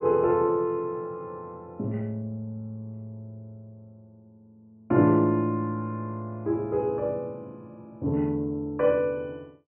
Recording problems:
treble missing; nothing above 3 kHz

